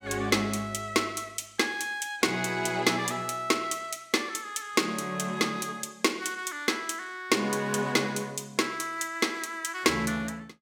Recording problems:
none

